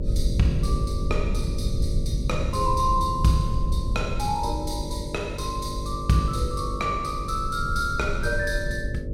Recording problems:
electrical hum; 50 Hz, harmonics up to 600 Hz, SNR 10 dB
rumble; below 110 Hz, SNR 3 dB

